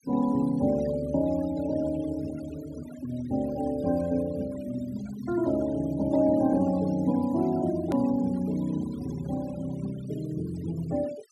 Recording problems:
denoising artefacts; signal-to-artefact ratio 19 dB
click at an edit; at 8 s

